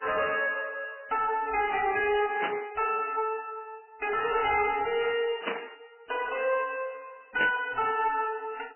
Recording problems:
lossy compression; MP3, log-spectral distance 6 dB, nothing above 2.5 kHz
distortion; soft clipping, signal-to-distortion ratio 11 dB
burst of static; at 2.5 s, at 5.5 s and at 7.5 s; peak +1 dB vs average level

